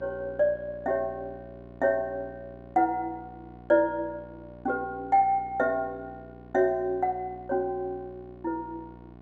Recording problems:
hum; 60 Hz, harmonics up to 1.5 kHz, SNR 20 dB

